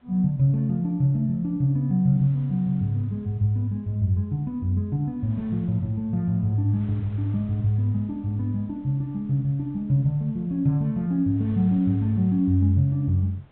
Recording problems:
treble missing; nothing above 4 kHz
wind on the microphone; below 750 Hz, SNR 30 dB

